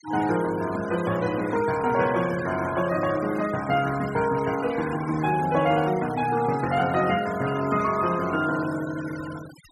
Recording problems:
denoising artefacts; signal-to-artefact ratio 15 dB

